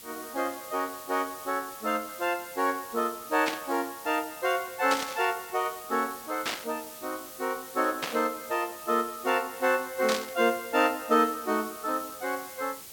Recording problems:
background hiss; SNR 13 dB
static burst; 5 times, first at 3.5 s; peak +3 dB vs average level

